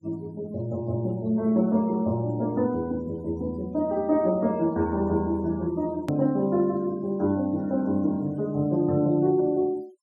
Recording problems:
denoising artefacts; signal-to-artefact ratio 26 dB
hard cut with a click; at 6 s

